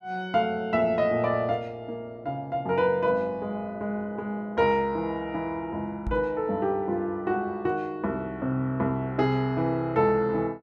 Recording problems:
knock on the microphone; at 6 s; peak -2 dB vs average level

